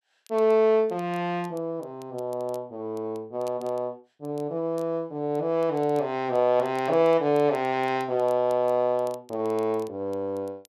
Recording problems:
crackling; vinyl, SNR 30 dB

